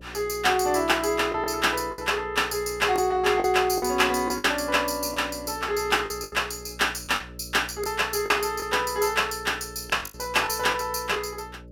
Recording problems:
electrical hum; 60 Hz, harmonics up to 600 Hz, SNR 20 dB
lost packets; 7% of the sound replaced, filled with the last packet

